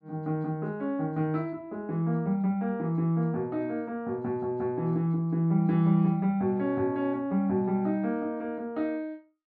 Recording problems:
none

